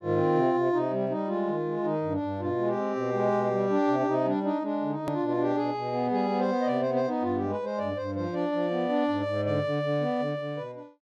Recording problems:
hard cut with a click; at 5 s

